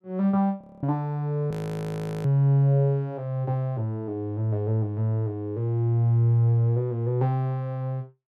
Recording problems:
frozen audio; at 0.5 s and at 1.5 s for 0.5 s

